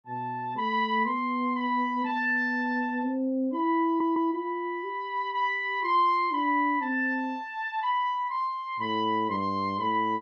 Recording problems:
audio stuttering; at 4 s

